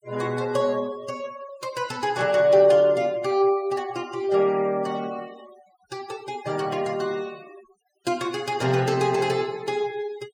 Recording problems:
denoising artefacts; signal-to-artefact ratio 22 dB

